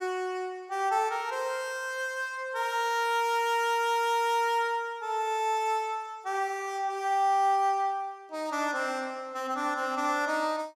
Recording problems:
none

